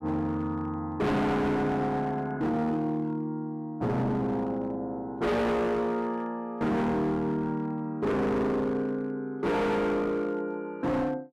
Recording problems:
distorted audio; hard clipping, signal-to-distortion ratio 6 dB

